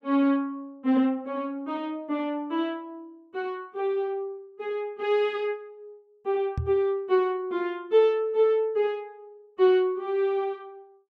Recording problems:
microphone thump; at 6.5 s; peak 0 dB vs average level

